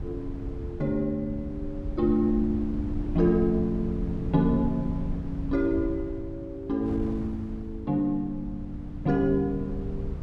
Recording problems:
low-frequency rumble; below 120 Hz, SNR 9 dB
wind on the microphone; below 140 Hz, SNR 16 dB

